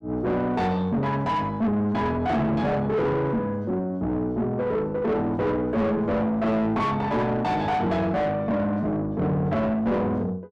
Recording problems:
distorted audio; soft clipping, signal-to-distortion ratio 7 dB

